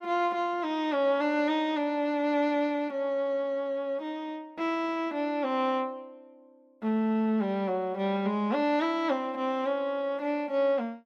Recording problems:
none

